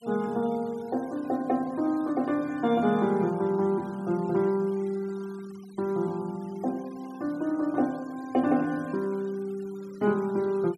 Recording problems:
denoising artefacts; signal-to-artefact ratio 25 dB

